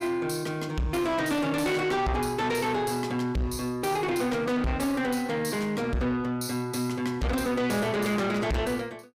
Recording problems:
distortion; soft clipping, signal-to-distortion ratio 8 dB

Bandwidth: 15.5 kHz